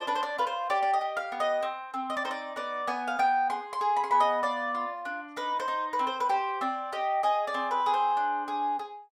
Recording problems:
none

